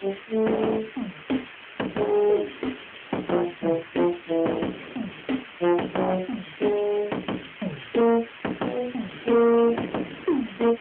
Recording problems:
phone line; 240 Hz to 3.4 kHz, AMR-NB
distorted audio; hard clipping, uneven, signal-to-distortion ratio 10 dB
background hiss; SNR 16 dB
wind noise; below 620 Hz, SNR 21 dB

